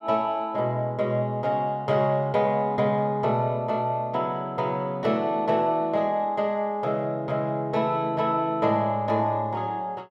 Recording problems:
none

